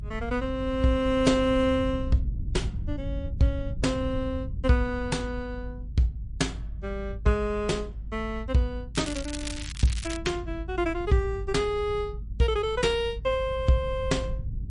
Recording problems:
lossy compression; MP3, log-spectral distance 2 dB, nothing above 10.4 kHz
rumble; below 94 Hz, strongest tone 52 Hz, SNR 8 dB
crackle; from 9 to 10 s; loose cable, SNR 10 dB

